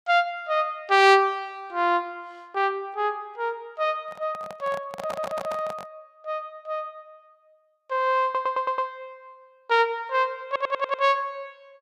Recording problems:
microphone handling noise; from 4 to 6 s; peak -6 dB vs average level
audio stuttering; at 5 s, at 8 s and at 10 s

